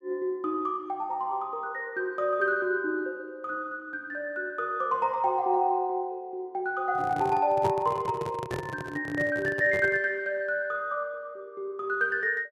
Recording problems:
handling noise; from 7 to 10 s; peak -1 dB vs average level

